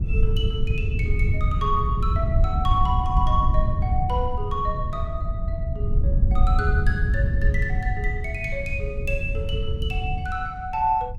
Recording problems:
wind on the microphone; below 92 Hz, SNR -3 dB

